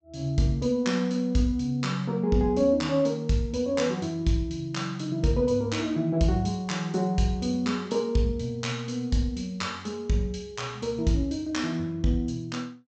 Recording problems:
low-pass filter; nothing above 8 kHz

